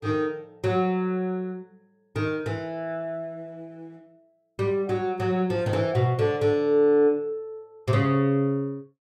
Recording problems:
none

